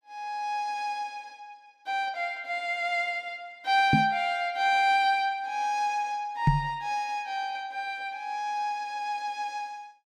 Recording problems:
microphone thump; at 4 s and at 6.5 s; peak +10 dB vs average level

